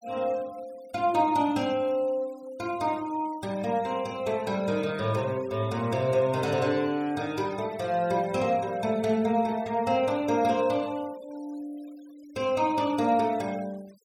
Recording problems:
denoising artefacts; signal-to-artefact ratio 23 dB

